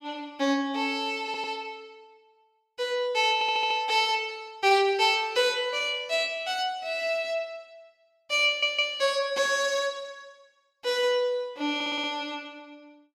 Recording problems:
stutter; 4 times, first at 1.5 s

